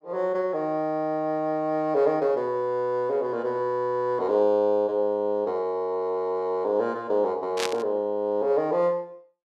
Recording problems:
static burst; at 7.5 s; peak +1 dB vs average level

